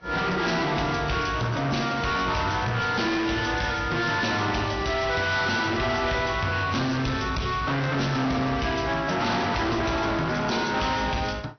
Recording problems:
low-pass filter; nothing above 6 kHz
lossy codec; AAC, log-spectral distance 6 dB
distortion; soft clipping, signal-to-distortion ratio 6 dB

